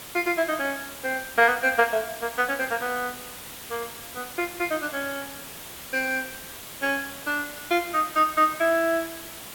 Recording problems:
hiss; slope -1 dB per octave, SNR 12 dB

